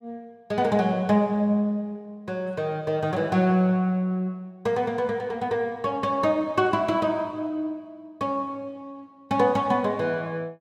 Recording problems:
none

